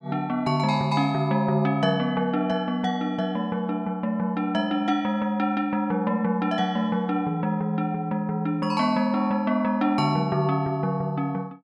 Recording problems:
none

